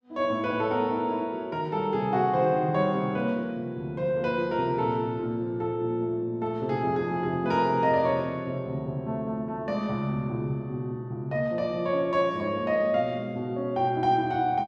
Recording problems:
none

